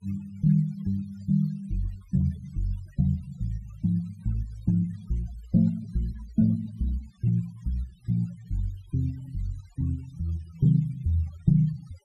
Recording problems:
denoising artefacts; signal-to-artefact ratio 24 dB

